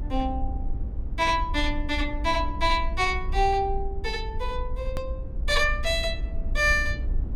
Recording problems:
low-frequency rumble; below 58 Hz, SNR 6 dB
click at an edit; at 5 s

